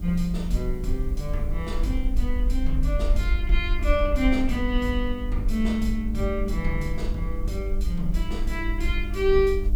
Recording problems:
electrical hum; 50 Hz, harmonics up to 700 Hz, SNR 11 dB
background hiss; slope 0 dB per octave, SNR 29 dB
rumble; below 50 Hz, SNR 1 dB

